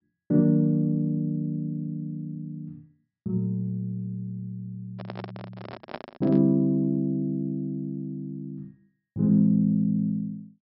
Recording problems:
treble cut off; nothing above 5.4 kHz
microphone handling noise; from 5 to 6.5 s; peak -5 dB vs average level

